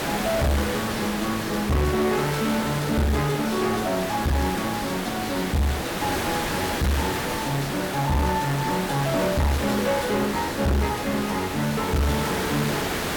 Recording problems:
distorted audio; hard clipping, uneven, signal-to-distortion ratio 7 dB
hiss; slope -4 dB per octave, SNR 3 dB

